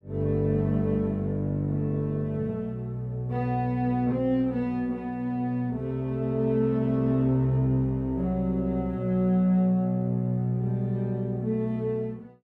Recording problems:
none

